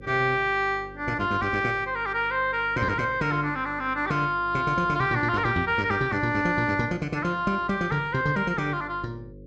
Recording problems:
hum; 50 Hz, harmonics up to 550 Hz, SNR 21 dB

